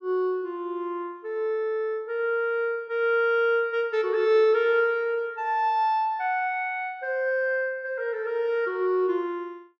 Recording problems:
none

